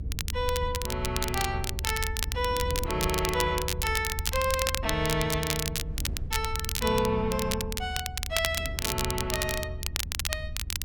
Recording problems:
low-frequency rumble; below 80 Hz, SNR 6 dB
wind on the microphone; below 210 Hz, SNR 14 dB
crackle; vinyl, SNR 2 dB

